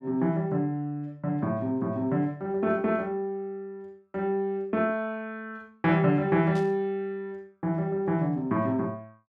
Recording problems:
static burst; at 6.5 s; peak -14 dB vs average level

